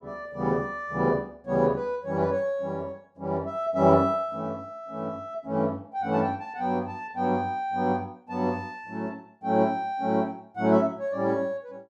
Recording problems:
none

